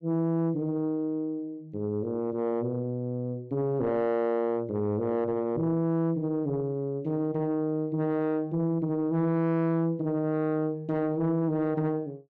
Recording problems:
distorted audio; soft clipping, signal-to-distortion ratio 10 dB

